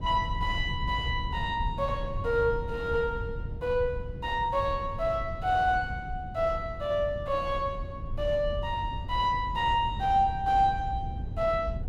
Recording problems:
rumble; below 110 Hz, SNR 8 dB

